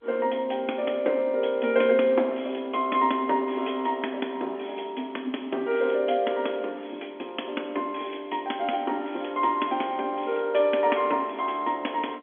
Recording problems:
phone line; 220 Hz to 3.4 kHz, G.711

